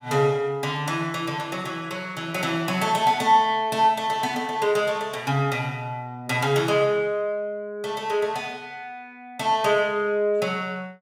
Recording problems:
none

